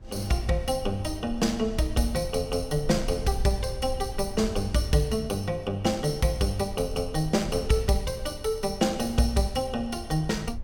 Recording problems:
wind on the microphone; below 72 Hz, SNR 13 dB

